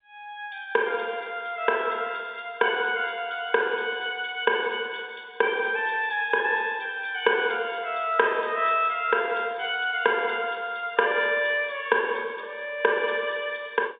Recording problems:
telephone audio; 260 Hz to 3.6 kHz, G.711

